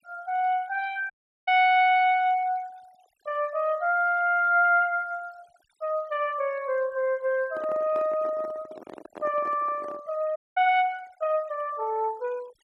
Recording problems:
denoising artefacts; signal-to-artefact ratio 27 dB
audio cutting out; at 1 s and at 10 s
microphone handling noise; from 7.5 to 10 s; peak -11 dB vs average level

